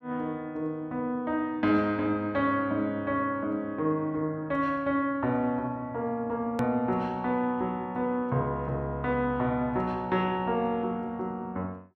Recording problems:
hard cut with a click; at 6.5 s

